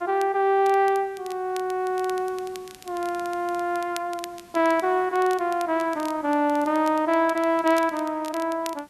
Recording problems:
hiss; SNR 29 dB
crackling; vinyl, SNR 21 dB

